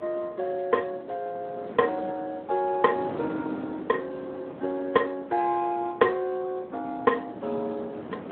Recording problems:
phone line; 240 Hz to 2.5 kHz, Speex
wind noise; below 640 Hz, SNR 12 dB

